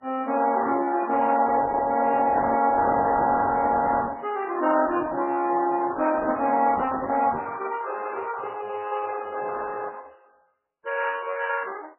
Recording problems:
codec artefacts; Opus, then MP3, log-spectral distance 4 dB, nothing above 2.9 kHz

